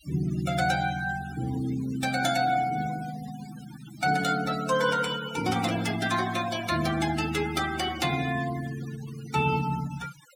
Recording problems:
noise reduction artefacts; signal-to-artefact ratio 14 dB

